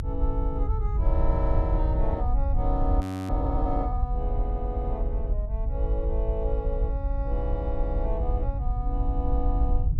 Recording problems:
low-frequency rumble; below 64 Hz, SNR -5 dB
audio freezing; at 3 s

